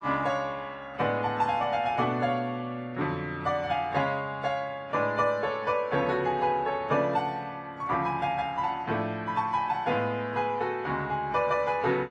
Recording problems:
lossy codec; MP3, then AAC, log-spectral distance 2 dB

